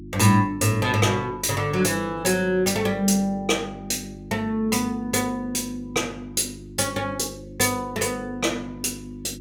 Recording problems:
mains hum; 50 Hz, harmonics up to 350 Hz, SNR 16 dB

